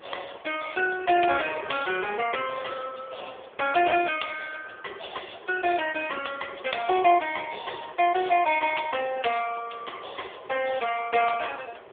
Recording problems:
telephone audio; 320 Hz to 3 kHz, AMR-NB
wind noise; below 1.1 kHz, SNR 20 dB

